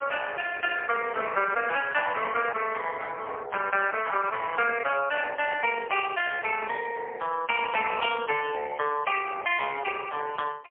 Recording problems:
phone line; 370 Hz to 3.3 kHz, AMR-NB, then MP3

